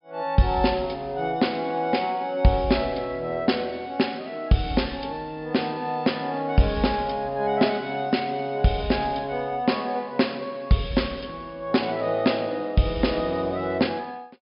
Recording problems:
treble cut off; nothing above 5.5 kHz

